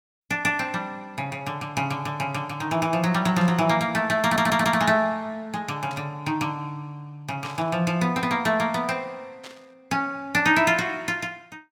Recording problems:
static burst; 4 times, first at 3.5 s; peak -11 dB vs average level
stutter; at 4 s

